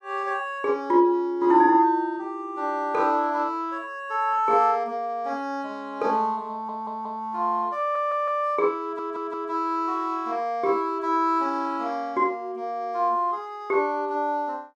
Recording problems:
audio stuttering; at 6.5 s, at 8 s and at 9 s

